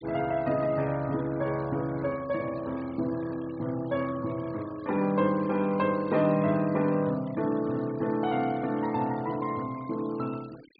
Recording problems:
treble cut off; nothing above 4.7 kHz
denoising artefacts; signal-to-artefact ratio 22 dB

